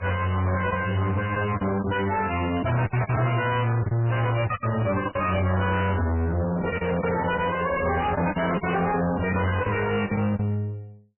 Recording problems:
codec artefacts; AAC, then MP3, log-spectral distance 5 dB, nothing above 2.6 kHz
distortion; soft clipping, signal-to-distortion ratio 6 dB
packet loss; 8% of the sound replaced, filled with the last packet
microphone handling noise; from 6.5 to 9 s; peak -1 dB vs average level

